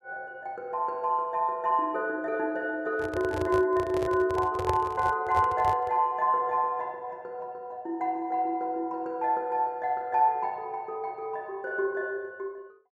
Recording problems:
microphone handling noise; from 3 to 6 s; peak +2 dB vs average level

